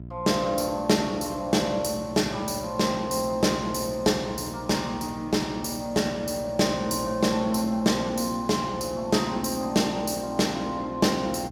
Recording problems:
electrical hum; 60 Hz, harmonics up to 660 Hz, SNR 18 dB

